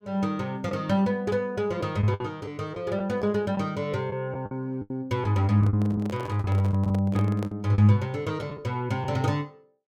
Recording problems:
lost packets; 7% of the sound replaced, filled with the last packet
handling noise; from 5.5 to 7.5 s; peak -6 dB vs average level

